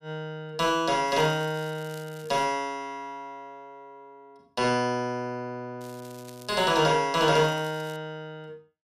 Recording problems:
crackling; from 1 to 2.5 s, at 6 s and at 7.5 s; loose cable, SNR 24 dB

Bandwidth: 14.5 kHz